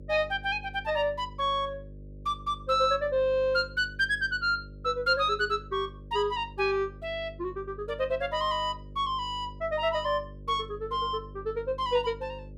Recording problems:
electrical hum; 50 Hz, harmonics up to 600 Hz, SNR 17 dB

